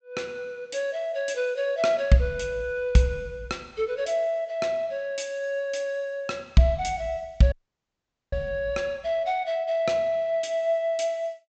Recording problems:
treble missing; nothing above 8 kHz
dropout; at 7.5 s for 1 s

